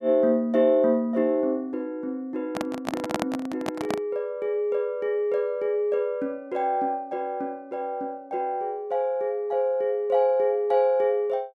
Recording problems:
handling noise; from 2.5 to 4 s; peak +3 dB vs average level

